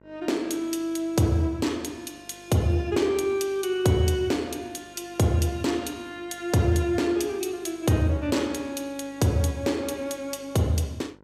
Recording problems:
hum; 50 Hz, harmonics up to 2.1 kHz, SNR 28 dB

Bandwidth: 15.5 kHz